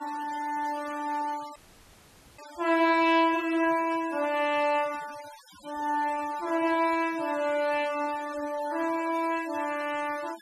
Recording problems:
denoising artefacts; signal-to-artefact ratio 18 dB
dropout; at 1.5 s for 1 s

